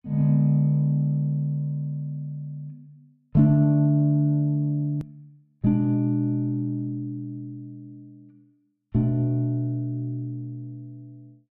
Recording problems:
hard cut with a click; at 5 s

